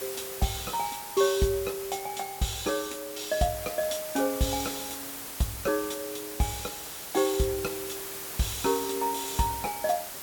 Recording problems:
hiss; slope -1 dB per octave, SNR 7 dB

